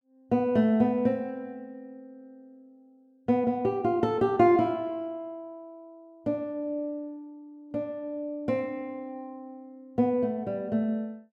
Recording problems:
none

